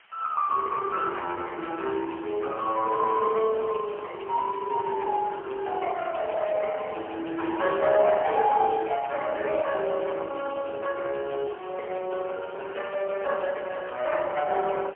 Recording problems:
telephone audio; 340 Hz to 3.1 kHz, AMR-NB, then MP3
background hiss; SNR 26 dB

